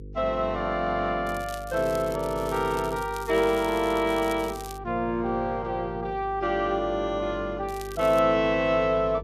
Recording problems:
mains hum; 50 Hz, harmonics up to 500 Hz, SNR 16 dB
crackle; from 1.5 to 5 s and at 7.5 s; loose cable, SNR 19 dB

